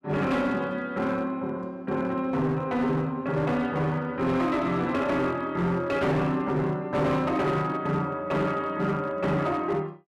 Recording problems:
distortion; hard clipping, signal-to-distortion ratio 11 dB

